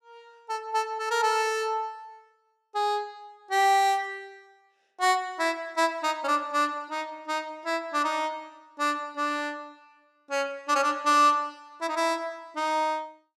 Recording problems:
none

